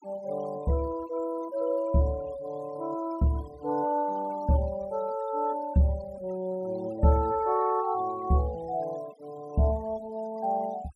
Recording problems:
noise reduction artefacts; signal-to-artefact ratio 22 dB

